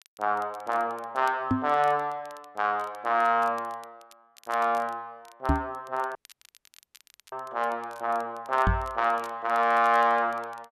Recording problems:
crackling; vinyl, SNR 27 dB
microphone thump; at 1.5 s, at 5.5 s and at 8.5 s; peak +5 dB vs average level
dropout; at 6 s for 1 s

